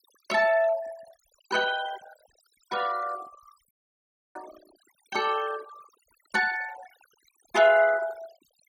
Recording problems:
denoising artefacts; signal-to-artefact ratio 17 dB
audio cutting out; at 3.5 s for 0.5 s

